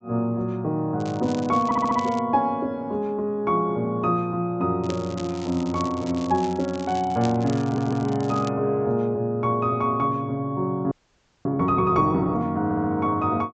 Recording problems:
treble cut off; nothing above 8 kHz
crackle; from 1 to 2 s and from 5 to 8.5 s; loose cable, SNR 19 dB
audio stuttering; at 1.5 s, at 7.5 s and at 13 s
audio freezing; at 11 s for 0.5 s

